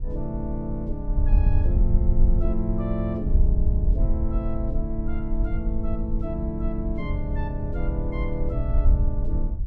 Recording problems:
mains hum; 60 Hz, harmonics up to 900 Hz, SNR 25 dB
wind on the microphone; below 60 Hz, SNR -4 dB

